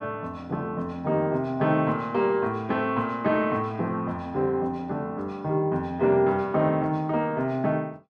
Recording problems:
none

